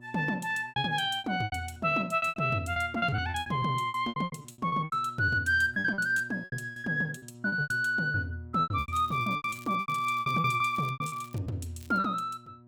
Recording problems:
electrical hum; 60 Hz, harmonics up to 960 Hz, SNR 21 dB
lost packets; 20% of the sound replaced, filled with repeated pitch periods
crackling; from 9 to 11 s and at 12 s; loose cable, SNR 25 dB

